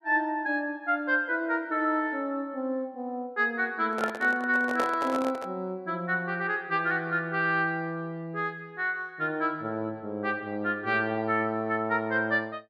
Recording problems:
handling noise; from 4 to 5.5 s; peak +1 dB vs average level

